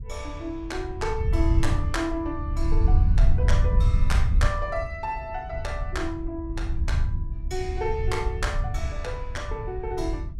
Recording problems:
wind on the microphone; below 78 Hz, SNR -5 dB

